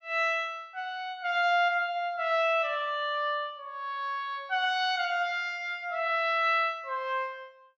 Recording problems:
treble missing; nothing above 8 kHz

